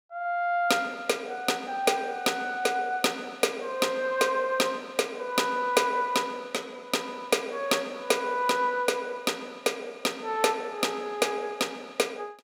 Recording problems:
none

